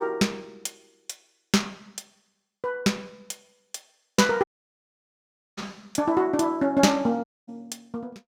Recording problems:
audio cutting out; at 4.5 s for 1 s and at 7 s

